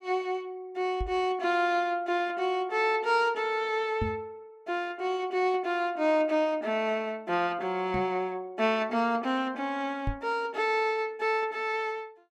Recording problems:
microphone bump; 4 times, first at 1 s; peak 0 dB vs average level

